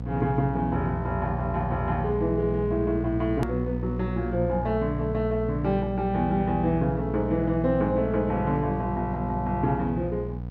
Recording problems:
hum; 60 Hz, harmonics up to 720 Hz, SNR 5 dB
click at an edit; at 3.5 s

